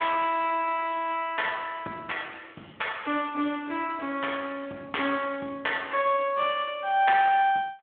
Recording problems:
phone line; 220 Hz to 3.4 kHz, Speex

